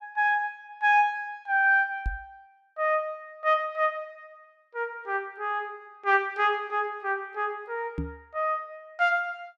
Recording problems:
microphone thump; at 2 s and at 8 s; peak -1 dB vs average level

